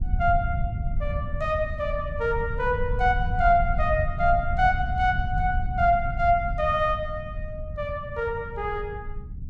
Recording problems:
rumble; below 96 Hz, SNR 6 dB

